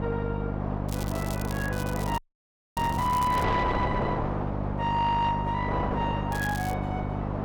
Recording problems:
distortion; soft clipping, signal-to-distortion ratio 12 dB
electrical hum; 50 Hz, harmonics up to 1 kHz, SNR 2 dB
wind on the microphone; below 970 Hz, SNR 4 dB
crackle; from 1 to 3.5 s and at 6.5 s; loose cable, SNR 14 dB
audio freezing; at 2 s for 0.5 s

